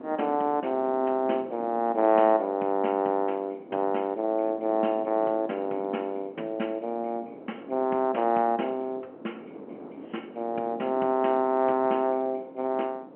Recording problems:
telephone audio; 190 Hz to 3.3 kHz, G.711
wind noise; below 530 Hz, SNR 17 dB

